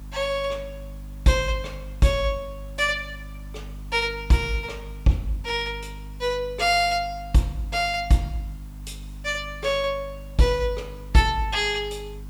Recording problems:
hum; 50 Hz, harmonics up to 300 Hz, SNR 15 dB
hiss; SNR 29 dB

